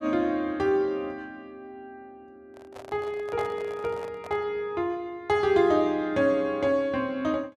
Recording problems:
handling noise; from 2.5 to 4.5 s; peak -8 dB vs average level

